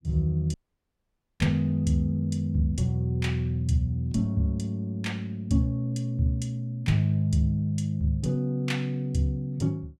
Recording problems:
dropout; at 0.5 s for 1 s

